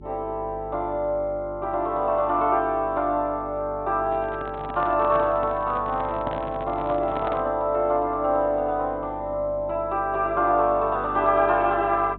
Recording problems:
low-pass filter; nothing above 4 kHz
hum; 50 Hz, harmonics up to 400 Hz, SNR 18 dB
handling noise; from 4 to 7.5 s; peak -4 dB vs average level

